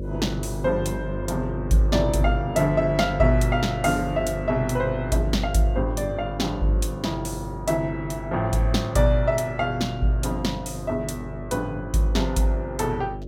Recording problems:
hum; 50 Hz, harmonics up to 600 Hz, SNR 9 dB

